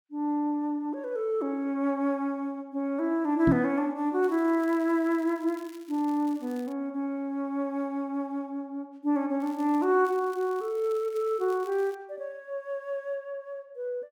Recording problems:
knock on the microphone; at 3.5 s; peak +8 dB vs average level
crackling; from 4 to 6.5 s, at 9.5 s and from 10 to 12 s; loose cable, SNR 26 dB

